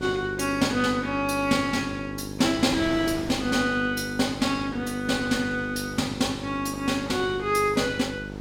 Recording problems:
electrical hum; 50 Hz, harmonics up to 1 kHz, SNR 11 dB
wind noise; below 1.6 kHz, SNR 18 dB

